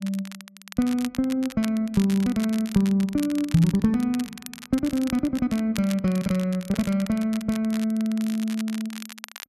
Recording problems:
crackling; vinyl, SNR 16 dB

